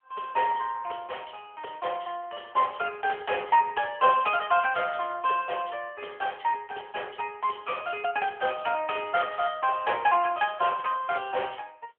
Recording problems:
telephone audio; 370 Hz to 3.2 kHz, AMR-NB

